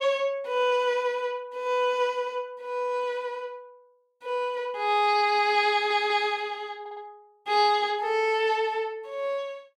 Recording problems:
stutter; at 5.5 s and at 7 s

